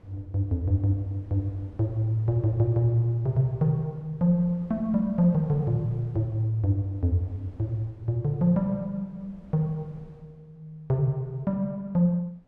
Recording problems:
wind noise; below 240 Hz, SNR 25 dB

